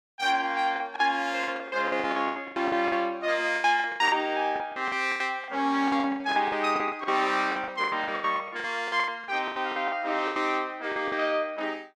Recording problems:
lost packets; 19% of the sound replaced, filled with the last packet

